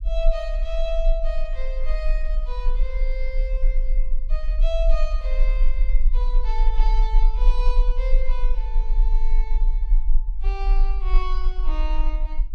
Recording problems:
rumble; below 36 Hz, strongest tone 20 Hz, SNR -9 dB

